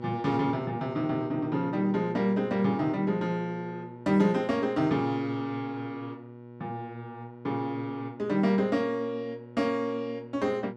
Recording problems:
hum; 60 Hz, harmonics up to 1.4 kHz, SNR 14 dB

